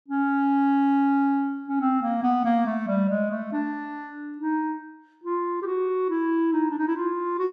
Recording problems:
none

